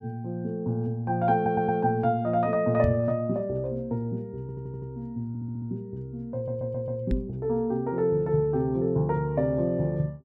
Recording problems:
stutter; 4 times, first at 1.5 s
knock on the microphone; at 3 s and at 7 s; peak +3 dB vs average level

